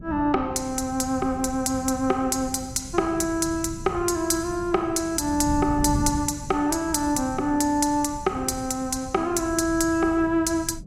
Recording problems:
wind on the microphone; below 170 Hz, SNR 13 dB

